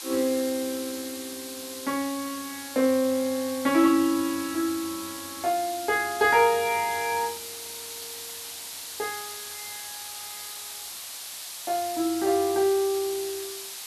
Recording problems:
background hiss; slope +3 dB per octave, SNR 10 dB

